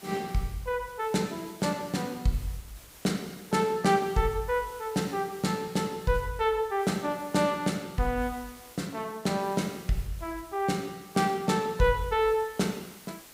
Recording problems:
background hiss; slope -2 dB per octave, SNR 20 dB

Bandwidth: 15.5 kHz